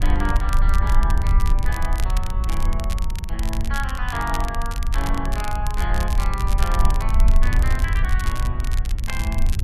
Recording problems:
wind on the microphone; below 58 Hz, SNR -6 dB
crackling; vinyl, SNR 8 dB

